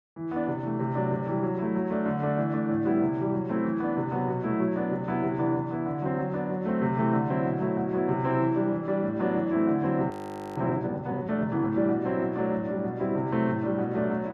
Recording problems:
frozen audio; at 10 s

